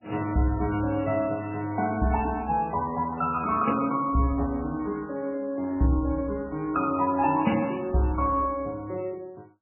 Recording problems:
lossy compression; MP3, log-spectral distance 3 dB, nothing above 2.5 kHz

